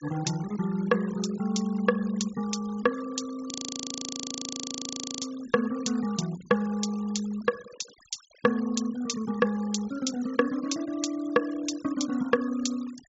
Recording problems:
treble cut off; nothing above 7.4 kHz
denoising artefacts; signal-to-artefact ratio 18 dB
audio freezing; at 3.5 s for 1.5 s

